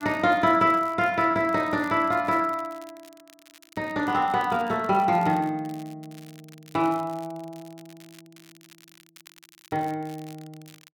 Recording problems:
crackle; vinyl, SNR 27 dB

